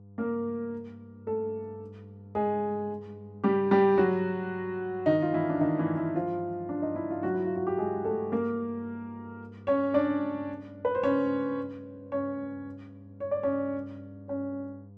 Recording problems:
mains hum; 50 Hz, harmonics up to 700 Hz, SNR 20 dB

